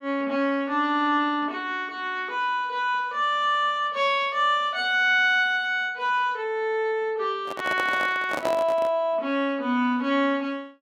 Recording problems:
handling noise; from 7.5 to 9 s; peak -1 dB vs average level

